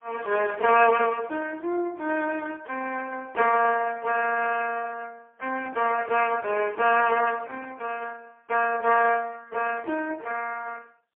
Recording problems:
phone line; 320 Hz to 2.7 kHz, AMR-NB, then MP3

